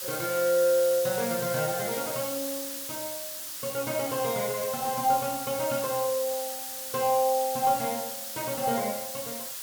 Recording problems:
hiss; slope +3 dB per octave, SNR 5 dB

